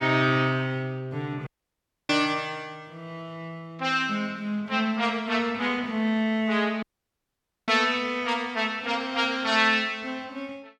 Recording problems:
audio cutting out; at 1.5 s for 0.5 s and at 7 s for 1 s

